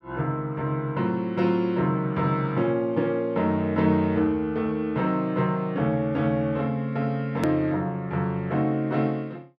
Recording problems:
edit click; at 7.5 s

